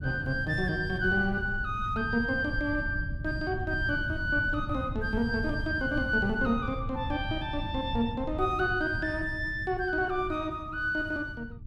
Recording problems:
low-frequency rumble; below 120 Hz, SNR 8 dB

